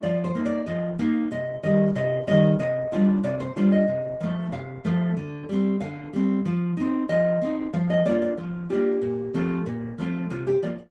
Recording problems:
lossy codec; Vorbis, then Opus, log-spectral distance 3 dB

